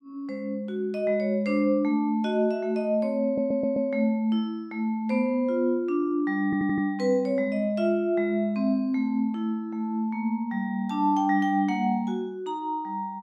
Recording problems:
audio stuttering; at 3.5 s and at 6.5 s

